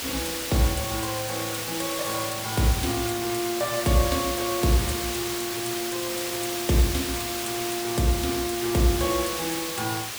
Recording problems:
background hiss; slope 0 dB per octave, SNR 3 dB

